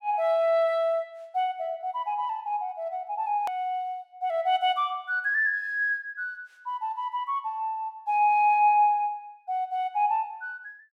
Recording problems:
edit click; at 3.5 s

